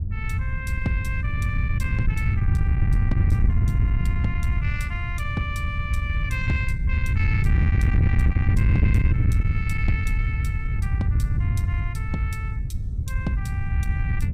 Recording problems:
distortion; soft clipping, signal-to-distortion ratio 12 dB
low-frequency rumble; below 94 Hz, SNR 9 dB
wind on the microphone; below 110 Hz, SNR -7 dB

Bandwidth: 15.5 kHz